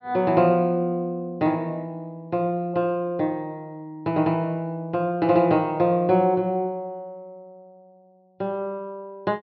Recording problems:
treble missing; nothing above 5.5 kHz

